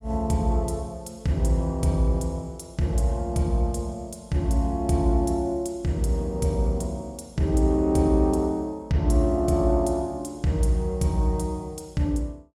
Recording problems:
none

